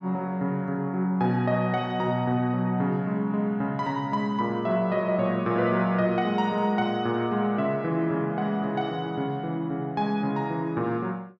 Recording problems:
none

